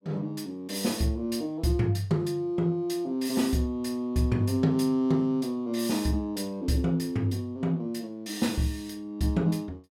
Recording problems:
none

